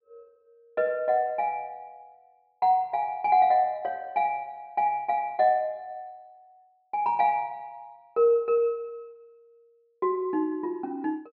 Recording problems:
low-pass filter; nothing above 5.3 kHz

